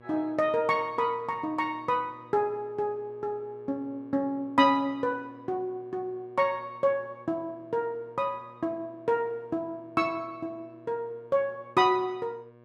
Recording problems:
hum; 60 Hz, harmonics up to 2.3 kHz, SNR 24 dB

